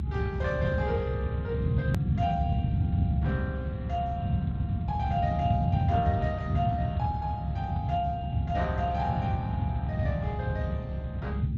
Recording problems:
lossy codec; Speex, log-spectral distance 2 dB
low-frequency rumble; below 170 Hz, SNR -4 dB
hard cut with a click; at 2 s

